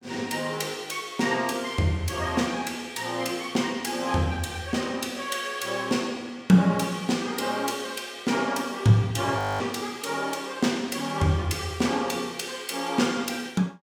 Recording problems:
audio freezing; at 9.5 s

